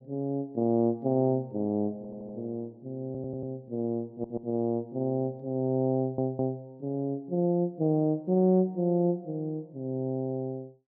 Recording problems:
stutter; 4 times, first at 2 s

